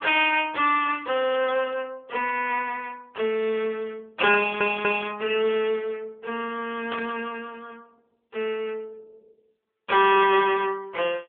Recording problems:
phone line; 300 Hz to 3.4 kHz, AMR-NB
audio stuttering; at 4.5 s
static burst; at 7 s; peak -6 dB vs average level

